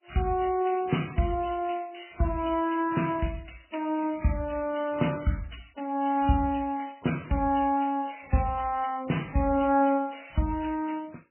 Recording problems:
lossy codec; MP3, then MP3, log-spectral distance 7 dB, nothing above 3 kHz

